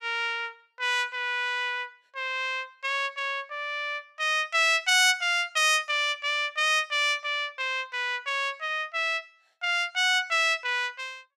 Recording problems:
none

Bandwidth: 15.5 kHz